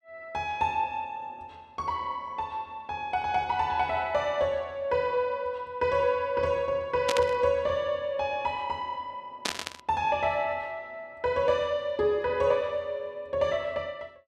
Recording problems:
static burst; at 7 s and at 9.5 s; peak +4 dB vs average level

